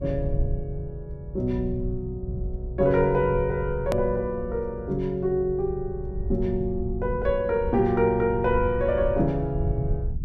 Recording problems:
low-frequency rumble; below 96 Hz, SNR 8 dB
click at an edit; at 4 s

